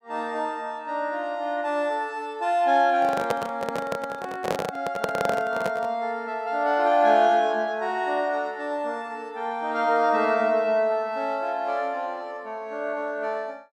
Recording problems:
microphone handling noise; from 3 to 6 s; peak +3 dB vs average level

